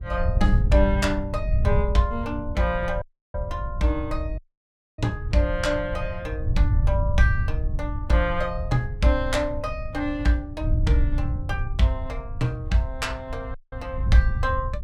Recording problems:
wind noise; below 94 Hz, SNR 3 dB
audio cutting out; at 3 s, at 4.5 s for 0.5 s and at 14 s

